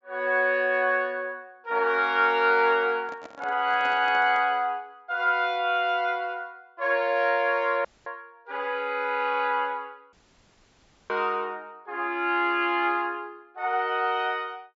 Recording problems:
treble missing; nothing above 8 kHz
microphone handling noise; from 3 to 4.5 s; peak -12 dB vs average level
audio cutting out; at 8 s and at 10 s for 1 s

